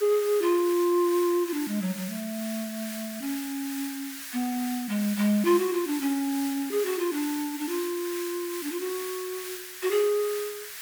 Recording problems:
background hiss; SNR 9 dB

